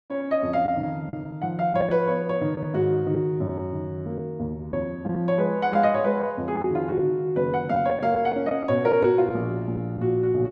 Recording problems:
lost packets; 4% of the sound replaced, filled with the last packet

